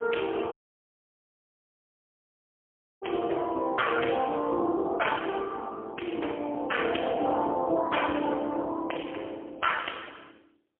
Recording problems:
telephone audio; 280 Hz to 3.3 kHz, AMR-NB, then MP3
audio cutting out; at 0.5 s for 2.5 s

